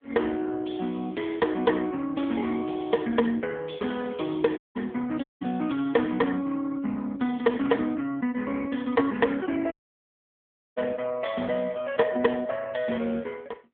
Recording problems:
telephone audio; 190 Hz to 3.5 kHz, AMR-NB
audio cutting out; at 4.5 s, at 5 s and at 9.5 s for 1 s

